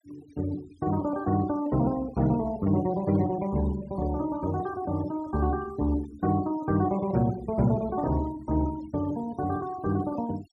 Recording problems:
denoising artefacts; signal-to-artefact ratio 20 dB

